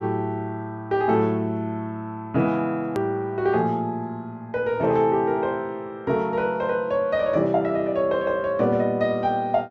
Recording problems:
click at an edit; at 3 s

